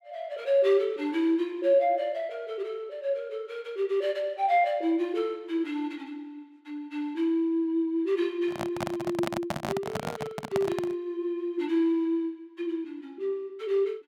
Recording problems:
handling noise; from 8.5 to 11 s; peak +2 dB vs average level

